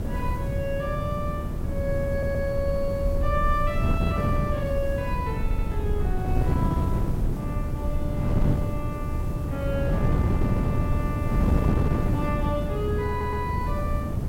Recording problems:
hiss; slope 0 dB per octave, SNR 20 dB
low-frequency rumble; below 74 Hz, SNR 2 dB
wind on the microphone; below 230 Hz, SNR -4 dB
audio stuttering; at 2 s, at 5.5 s and at 13 s

